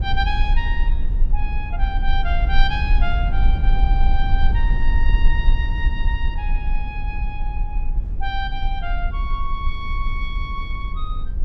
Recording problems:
low-frequency rumble; below 48 Hz, strongest tone 20 Hz, SNR -6 dB

